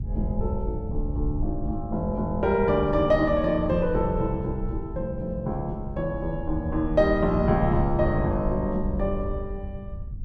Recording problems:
wind noise; below 82 Hz, SNR 7 dB

